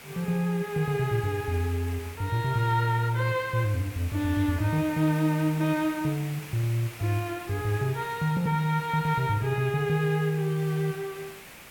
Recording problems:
background hiss; SNR 16 dB

